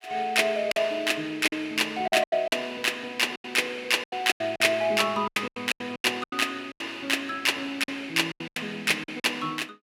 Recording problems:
packet loss; 13% of the sound replaced, filled with silence

